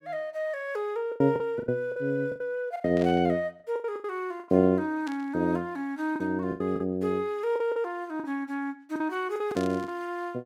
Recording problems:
packet loss; 11% of the sound replaced, filled with the last packet
static burst; at 3 s, at 5 s and at 9.5 s; peak -9 dB vs average level

